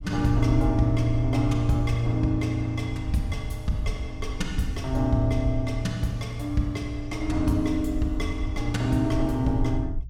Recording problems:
low-frequency rumble; below 74 Hz, SNR 8 dB

